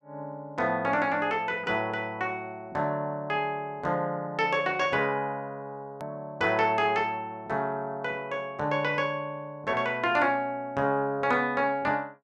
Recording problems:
click at an edit; at 6 s

